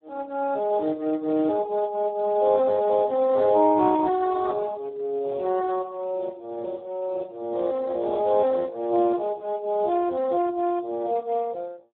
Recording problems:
phone line; 280 Hz to 2.1 kHz, Speex

